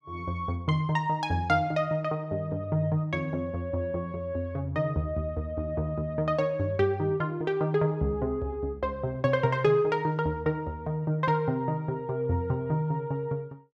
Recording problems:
none

